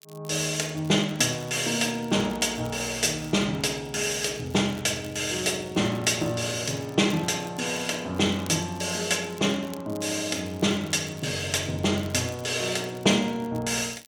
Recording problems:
crackling; vinyl, SNR 24 dB

